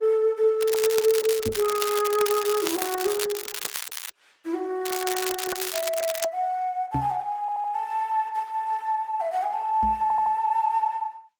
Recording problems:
lossy compression; Opus, then Opus, log-spectral distance 4 dB, nothing above 19.5 kHz
crackling; from 0.5 to 4 s and from 5 to 6 s; loose cable, SNR 6 dB
microphone bump; at 1.5 s, at 7 s and at 10 s; peak +1 dB vs average level
stutter; at 7.5 s and at 10 s

